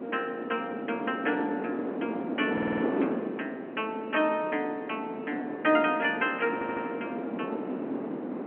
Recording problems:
telephone audio; 190 Hz to 3.2 kHz, G.711
wind noise; below 520 Hz, SNR 4 dB
stutter; at 2.5 s and at 6.5 s

